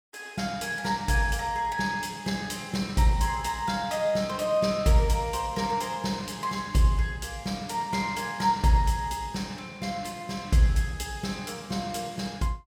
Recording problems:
none

